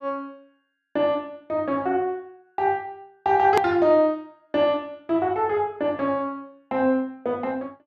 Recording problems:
hard cut with a click; at 3.5 s

